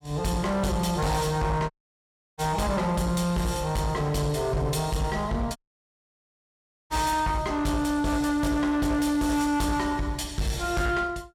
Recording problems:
distortion; soft clipping, signal-to-distortion ratio 10 dB
dropout; at 1.5 s for 0.5 s and at 5.5 s for 1.5 s

